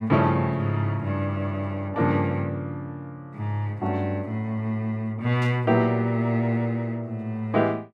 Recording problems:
static burst; at 5.5 s; peak -13 dB vs average level

